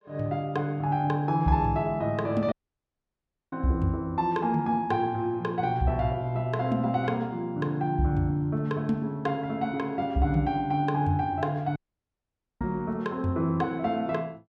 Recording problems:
audio cutting out; at 2.5 s for 1 s and at 12 s for 1 s

